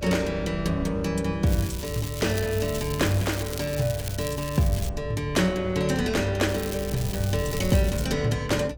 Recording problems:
rumble; below 74 Hz, strongest tone 62 Hz, SNR 12 dB
crackling; from 1.5 to 5 s and from 6.5 to 8 s; loose cable, SNR 11 dB

